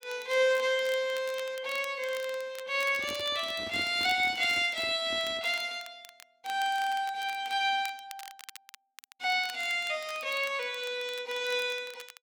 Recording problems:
crackling; vinyl, SNR 19 dB
handling noise; from 3 to 5.5 s; peak -8 dB vs average level

